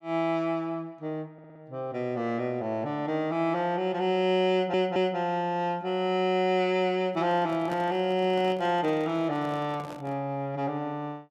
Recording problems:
stutter; at 1.5 s and at 4.5 s
microphone handling noise; from 7 to 10 s; peak -7 dB vs average level

